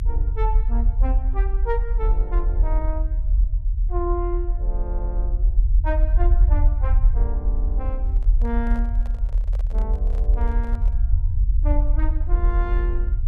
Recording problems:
low-frequency rumble; below 50 Hz, strongest tone 42 Hz, SNR -10 dB
handling noise; from 8 to 11 s; peak -7 dB vs average level

